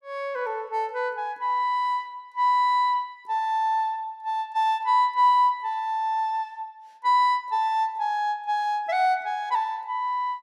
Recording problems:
none

